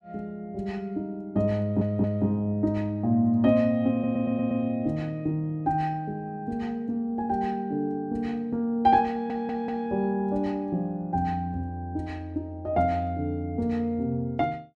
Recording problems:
stutter; at 1.5 s, at 4 s and at 9 s

